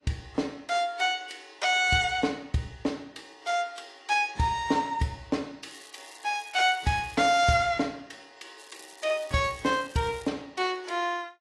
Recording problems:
lossy codec; AAC, log-spectral distance 5 dB
crackle; from 5.5 to 7.5 s and from 8.5 to 10 s; loose cable, SNR 23 dB

